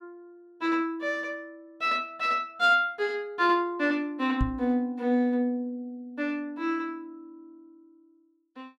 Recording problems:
microphone bump; at 4.5 s; peak +3 dB vs average level

